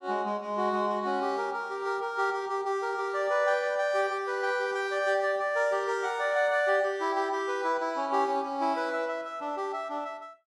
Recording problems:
none

